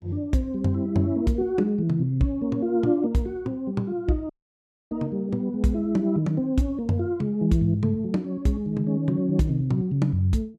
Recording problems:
dropout; at 4.5 s for 0.5 s

